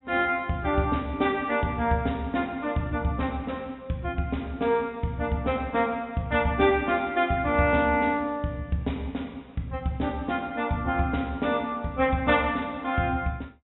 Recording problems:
treble missing; nothing above 3.8 kHz

